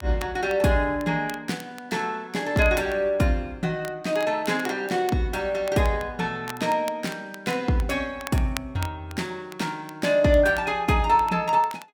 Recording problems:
crackle; vinyl, SNR 19 dB

